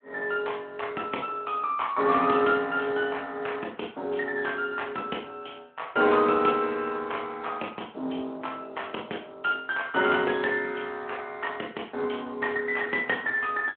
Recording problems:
telephone audio; 260 Hz to 3.3 kHz, Speex

